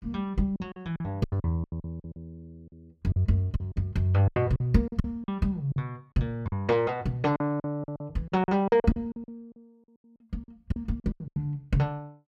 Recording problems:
packet loss; 16% of the sound replaced, filled with silence

